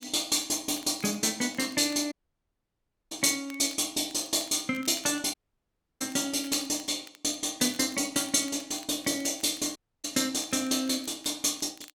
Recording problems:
crackling; vinyl, SNR 23 dB
dropout; at 2 s for 1 s, at 5.5 s for 0.5 s and at 10 s

